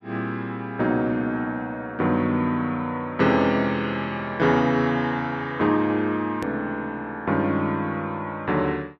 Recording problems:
click at an edit; at 6.5 s

